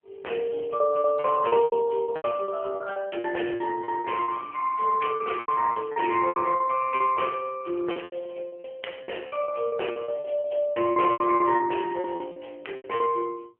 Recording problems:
telephone audio; 300 Hz to 3.2 kHz, AMR-NB
packet loss; 15% of the sound replaced, filled with repeated pitch periods

